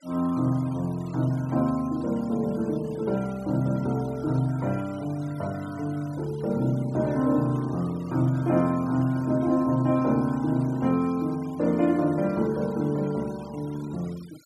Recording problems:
noise reduction artefacts; signal-to-artefact ratio 23 dB

